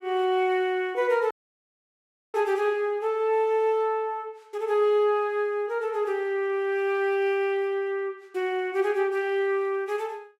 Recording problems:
dropout; at 1.5 s for 1 s

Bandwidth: 16 kHz